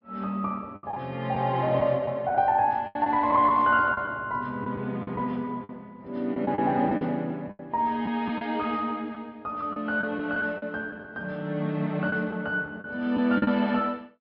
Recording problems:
treble cut off; nothing above 5.5 kHz
lost packets; 7% of the sound replaced, filled with the last packet

